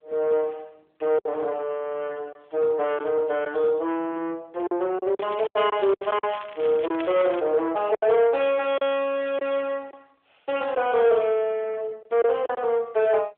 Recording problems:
phone line; 340 Hz to 3.6 kHz, AMR-NB
distorted audio; soft clipping, signal-to-distortion ratio 13 dB
lost packets; 5% of the sound replaced, filled with silence
crackle; from 5 to 7.5 s; loose cable, SNR 18 dB

